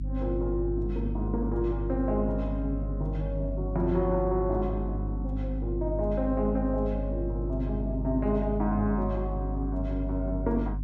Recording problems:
electrical hum; 50 Hz, harmonics up to 300 Hz, SNR 3 dB

